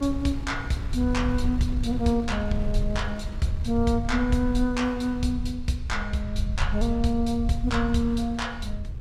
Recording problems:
low-frequency rumble; below 78 Hz, SNR 5 dB
wind on the microphone; below 200 Hz, SNR 16 dB

